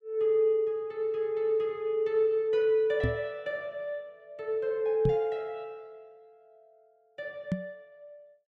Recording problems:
knock on the microphone; at 3 s, at 5 s and at 7.5 s; peak +4 dB vs average level

